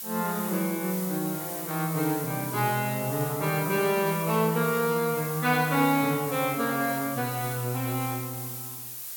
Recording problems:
hiss; slope +1 dB per octave, SNR 7 dB

